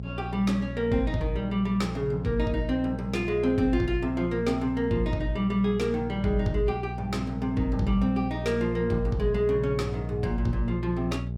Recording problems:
hum; 60 Hz, harmonics up to 600 Hz, SNR 8 dB

